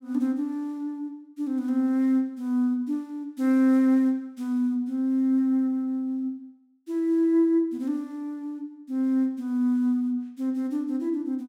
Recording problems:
none

